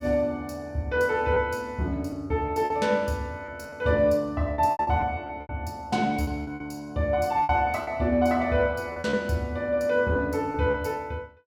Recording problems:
packet loss; 8% of the sound replaced, filled with repeated pitch periods

